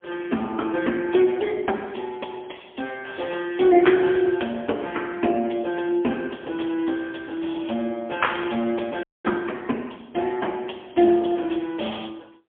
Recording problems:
phone line; 190 Hz to 3.4 kHz, AMR-NB, then MP3
crackling; from 6.5 to 8 s; loose cable, SNR 29 dB
frozen audio; at 9 s

